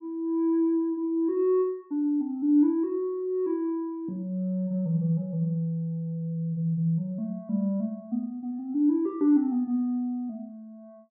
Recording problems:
none

